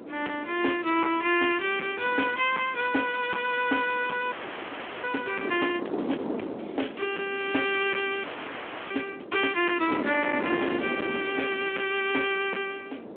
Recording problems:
phone line; 220 Hz to 3.4 kHz, Speex
distortion; hard clipping, signal-to-distortion ratio 12 dB
wind on the microphone; below 580 Hz, SNR 10 dB
audio freezing; at 4.5 s for 0.5 s and at 8 s for 0.5 s

